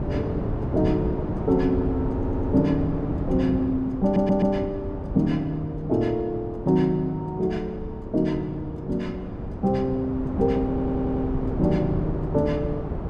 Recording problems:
wind noise; below 330 Hz, SNR 6 dB
audio stuttering; at 2 s, at 4 s and at 11 s

